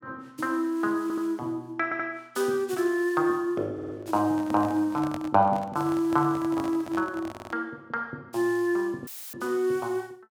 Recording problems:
stutter; 4 times, first at 1 s
microphone handling noise; from 4 to 7.5 s; peak -5 dB vs average level
audio cutting out; at 9 s; filled with static

